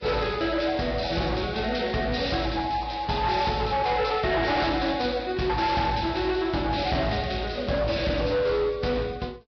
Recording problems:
codec artefacts; Vorbis, log-spectral distance 5 dB, nothing above 5.5 kHz
distorted audio; hard clipping, signal-to-distortion ratio 11 dB

